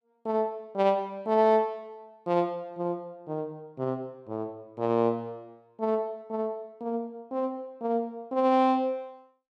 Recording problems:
none

